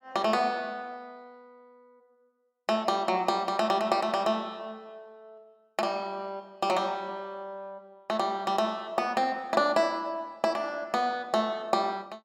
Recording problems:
none

